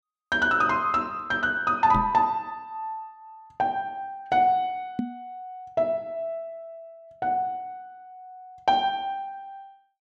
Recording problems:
knock on the microphone; at 2 s and at 5 s; peak +2 dB vs average level

